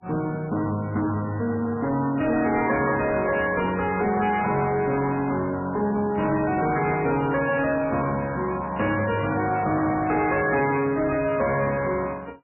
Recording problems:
lossy codec; MP3, log-spectral distance 4 dB, nothing above 2.4 kHz
distortion; soft clipping, signal-to-distortion ratio 12 dB

